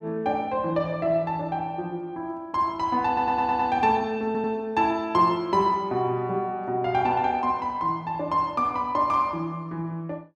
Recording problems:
stutter; at 3 s and at 4.5 s

